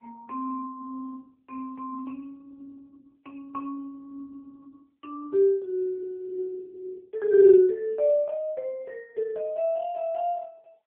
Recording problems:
telephone audio; 300 Hz to 2.6 kHz, AMR-NB

